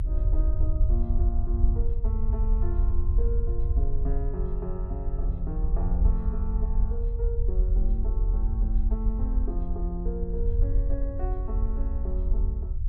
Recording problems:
rumble; below 60 Hz, SNR -10 dB

